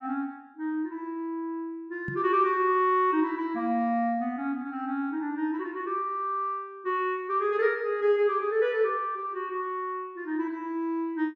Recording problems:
knock on the microphone; at 2 s; peak -4 dB vs average level

